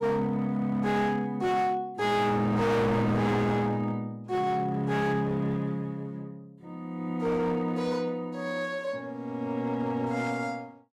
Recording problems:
distorted audio; hard clipping, signal-to-distortion ratio 8 dB

